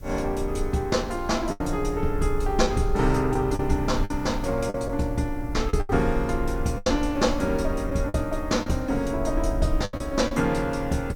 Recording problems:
hiss; SNR 29 dB
rumble; below 58 Hz, SNR 8 dB
lost packets; 6% of the sound replaced, filled with the last packet

